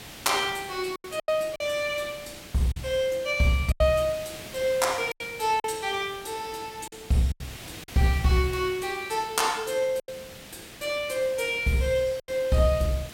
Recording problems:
background hiss; SNR 16 dB
lost packets; 6% of the sound replaced, filled with silence

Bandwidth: 16.5 kHz